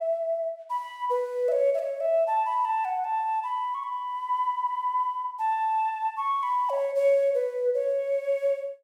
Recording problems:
none

